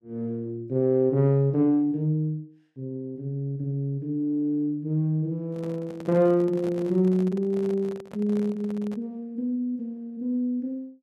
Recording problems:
handling noise; from 5.5 to 9 s; peak -10 dB vs average level

